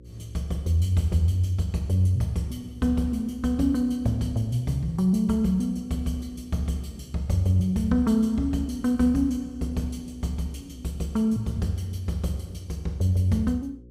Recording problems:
hum; 60 Hz, harmonics up to 540 Hz, SNR 23 dB

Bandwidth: 15.5 kHz